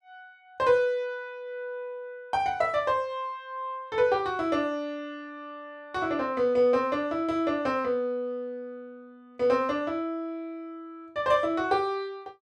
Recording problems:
none

